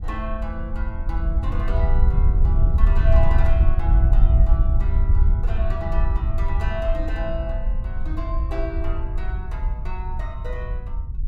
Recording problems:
wind on the microphone; below 66 Hz, SNR -10 dB

